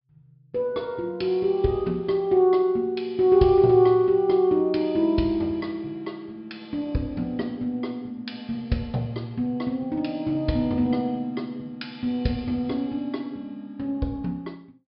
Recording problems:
treble cut off; nothing above 5.3 kHz

